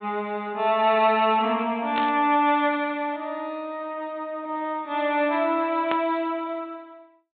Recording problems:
treble missing; nothing above 4 kHz
static burst; at 2 s and at 6 s; peak -1 dB vs average level

